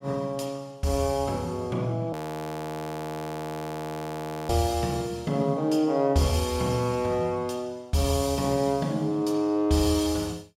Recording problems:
frozen audio; at 2 s for 2.5 s

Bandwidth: 16 kHz